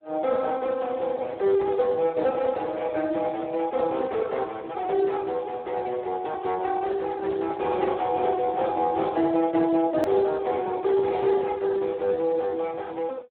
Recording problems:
phone line; 300 Hz to 2.2 kHz, Speex
click at an edit; at 10 s

